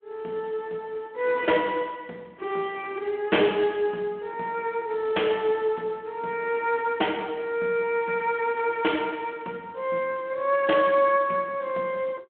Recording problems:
telephone audio; 260 Hz to 3.3 kHz, Speex

